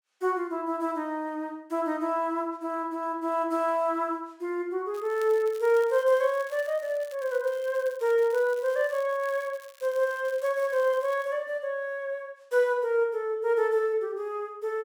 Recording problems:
crackle; from 5 to 11 s; loose cable, SNR 24 dB

